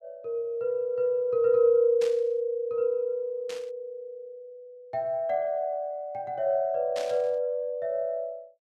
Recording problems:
static burst; at 2 s, at 3.5 s and at 7 s; peak -8 dB vs average level

